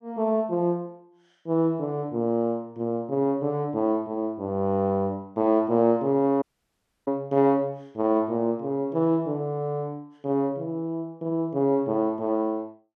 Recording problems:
dropout; at 6.5 s for 0.5 s

